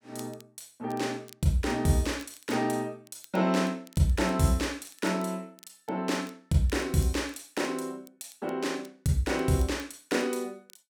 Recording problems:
crackle; vinyl, SNR 26 dB

